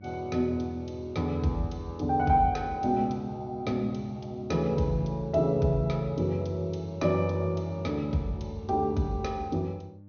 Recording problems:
low-pass filter; nothing above 6.3 kHz
mains hum; 50 Hz, harmonics up to 600 Hz, SNR 21 dB

